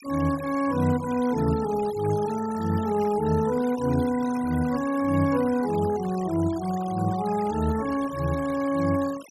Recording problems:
noise reduction artefacts; signal-to-artefact ratio 17 dB

